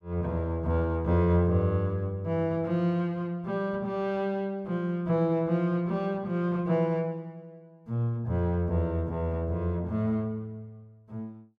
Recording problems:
none

